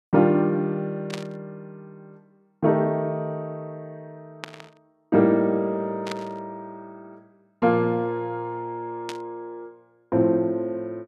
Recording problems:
burst of static; 4 times, first at 1 s; peak -5 dB vs average level

